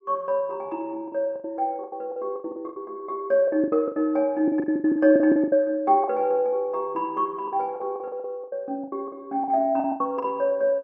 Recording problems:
packet loss; 16% of the sound replaced, filled with the last packet

